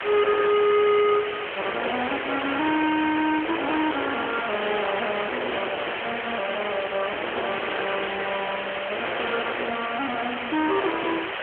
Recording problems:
phone line; 340 Hz to 3.2 kHz, AMR-NB
distorted audio; soft clipping, signal-to-distortion ratio 6 dB
hiss; SNR 3 dB

